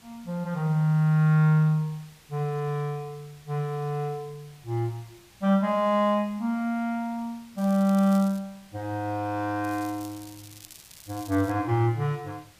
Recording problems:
background hiss; slope -1 dB per octave, SNR 27 dB
crackle; at 7.5 s and from 9.5 to 12 s; loose cable, SNR 21 dB

